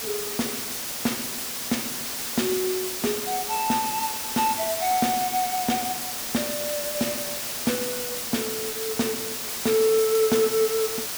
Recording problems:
hiss; slope 0 dB per octave, SNR 2 dB

